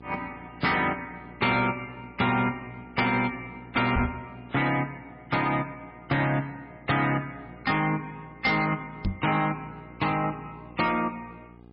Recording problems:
lossy codec; MP3, log-spectral distance 3 dB, nothing above 5.3 kHz
distorted audio; hard clipping, signal-to-distortion ratio 10 dB
hum; 60 Hz, harmonics up to 1.3 kHz, SNR 22 dB
microphone bump; at 4 s and at 9 s; peak +3 dB vs average level

